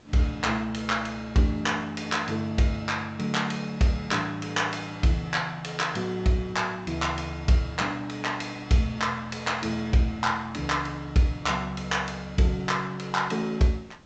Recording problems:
treble cut off; nothing above 8 kHz
hiss; slope -5 dB per octave, SNR 27 dB

